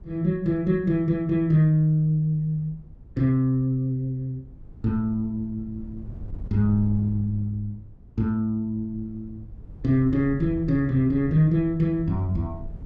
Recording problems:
wind on the microphone; below 110 Hz, SNR 18 dB

